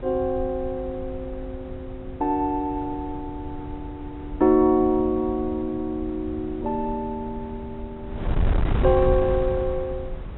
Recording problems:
low-pass filter; nothing above 3.8 kHz
wind on the microphone; below 120 Hz, SNR 8 dB

